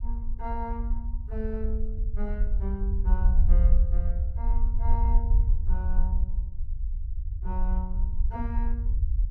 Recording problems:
rumble; below 56 Hz, SNR -10 dB

